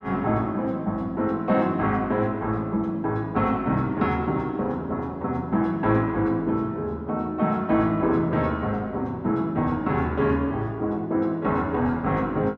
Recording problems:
none

